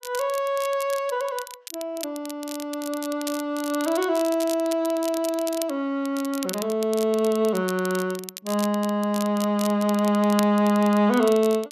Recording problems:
crackling; vinyl, SNR 14 dB

